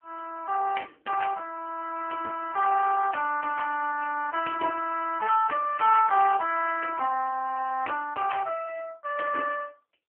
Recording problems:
telephone audio; 260 Hz to 2.5 kHz, AMR-NB

